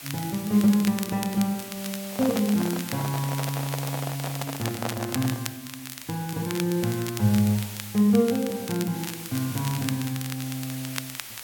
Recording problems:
background hiss; slope +1 dB per octave, SNR 11 dB
crackle; vinyl, SNR 12 dB
handling noise; from 2 to 5.5 s; peak 0 dB vs average level

